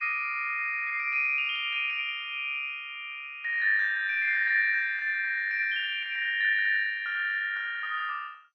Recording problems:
lossy codec; MP2, log-spectral distance 3 dB, nothing above 5.3 kHz

